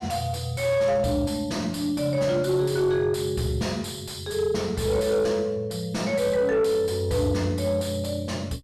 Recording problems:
distortion; soft clipping, signal-to-distortion ratio 11 dB

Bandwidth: 13.5 kHz